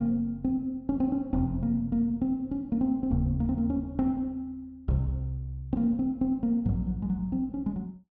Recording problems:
none

